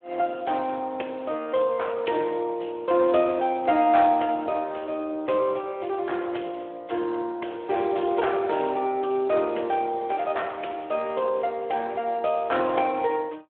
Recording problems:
telephone audio; 280 Hz to 3.5 kHz, Speex

